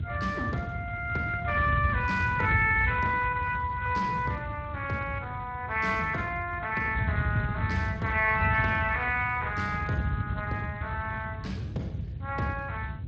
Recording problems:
lossy codec; Speex, log-spectral distance 3 dB
wind noise; below 140 Hz, SNR 5 dB

